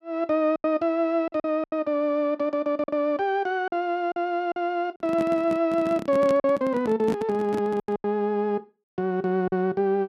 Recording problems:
packet loss; 7% of the sound replaced, filled with silence
microphone handling noise; from 5 to 8 s; peak -3 dB vs average level

